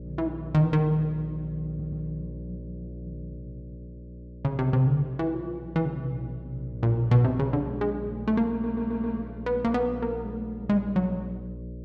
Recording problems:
electrical hum; 60 Hz, harmonics up to 600 Hz, SNR 13 dB
audio stuttering; at 1.5 s and at 8.5 s

